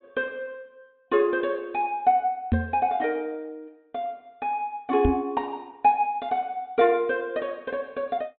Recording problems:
treble missing; nothing above 4 kHz
knock on the microphone; at 2.5 s and at 5 s; peak +7 dB vs average level

